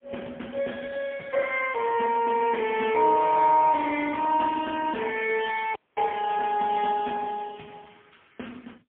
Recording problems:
phone line; 260 Hz to 3.3 kHz, AMR-NB, then MP3
audio freezing; at 6 s

